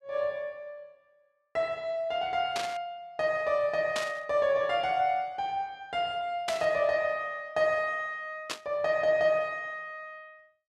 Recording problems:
burst of static; 4 times, first at 2.5 s; peak 0 dB vs average level

